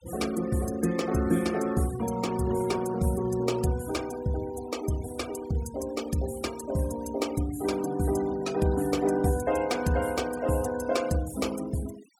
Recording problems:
denoising artefacts; signal-to-artefact ratio 17 dB

